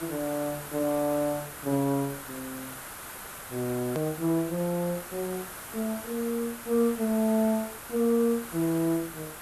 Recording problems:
background hiss; SNR 11 dB
hard cut with a click; at 4 s

